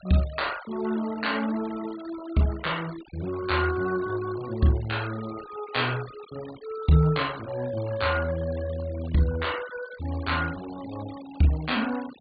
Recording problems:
low-pass filter; nothing above 4.6 kHz
denoising artefacts; signal-to-artefact ratio 17 dB

